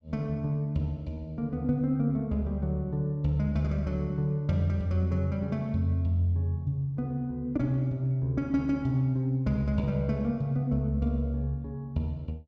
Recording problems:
none

